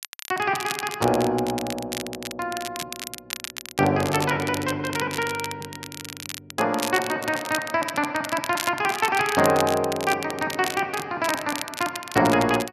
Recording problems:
crackle; vinyl, SNR 9 dB

